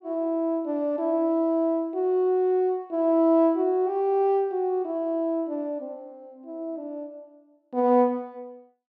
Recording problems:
none

